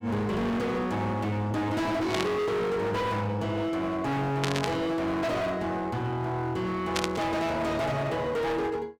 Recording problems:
distorted audio; hard clipping, signal-to-distortion ratio 6 dB
static burst; at 2 s, at 4.5 s and at 7 s; peak +4 dB vs average level

